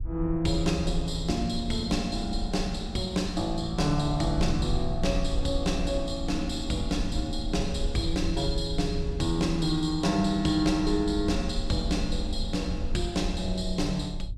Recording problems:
rumble; below 64 Hz, SNR 7 dB

